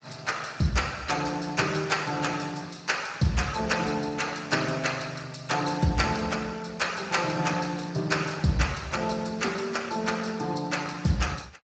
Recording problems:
codec artefacts; Speex, log-spectral distance 7 dB, nothing above 7.3 kHz

